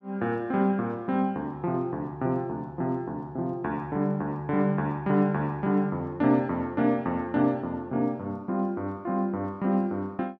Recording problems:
none

